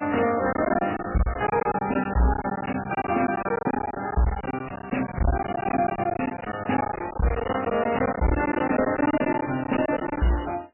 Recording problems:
codec artefacts; AAC, then MP3, log-spectral distance 8 dB, nothing above 2.9 kHz
distorted audio; soft clipping, signal-to-distortion ratio 6 dB
lost packets; 16% of the sound replaced, filled with silence

